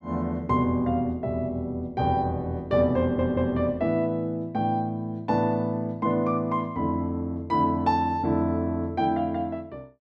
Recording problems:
stutter; at 3 s

